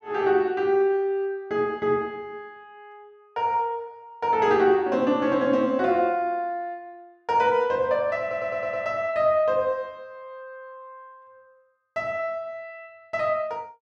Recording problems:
stutter; at 8 s

